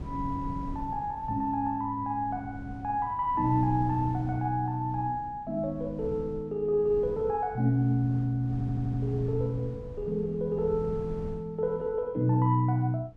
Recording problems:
wind on the microphone; below 180 Hz, SNR 14 dB
audio stuttering; at 8.5 s

